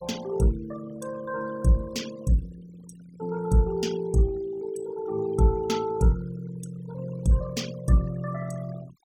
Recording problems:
denoising artefacts; signal-to-artefact ratio 19 dB

